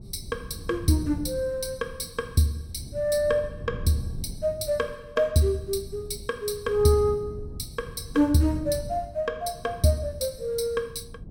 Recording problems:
wind on the microphone; below 160 Hz, SNR 14 dB

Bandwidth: 16.5 kHz